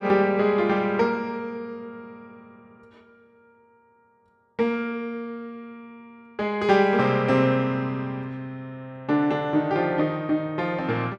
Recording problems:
none

